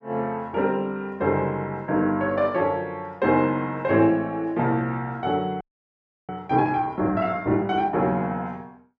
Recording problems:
audio freezing; at 5.5 s for 0.5 s

